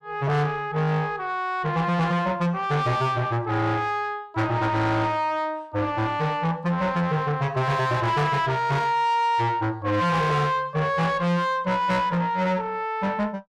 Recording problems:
distorted audio; soft clipping, signal-to-distortion ratio 7 dB

